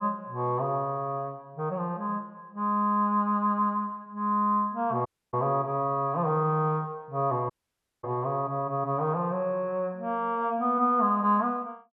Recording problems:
dropout; at 5 s and at 7.5 s for 0.5 s

